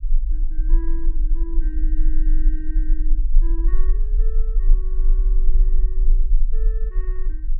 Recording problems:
low-frequency rumble; below 34 Hz, strongest tone 20 Hz, SNR -18 dB

